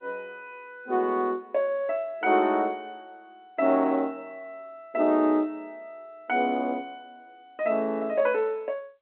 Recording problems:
telephone audio; 220 Hz to 3.3 kHz, G.711

